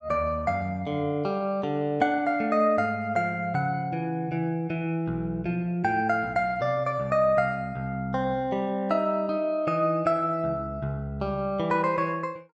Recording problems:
none

